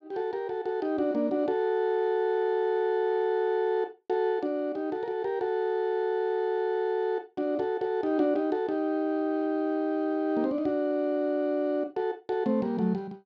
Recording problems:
none

